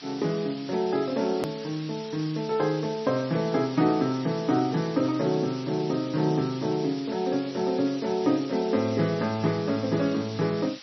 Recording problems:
lossy compression; MP3, log-spectral distance 12 dB, nothing above 13.1 kHz
background hiss; slope +3 dB per octave, SNR 16 dB
click at an edit; at 1.5 s

